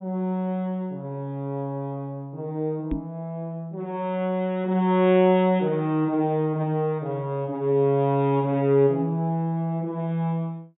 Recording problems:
low-pass filter; nothing above 4 kHz
knock on the microphone; at 3 s; peak 0 dB vs average level

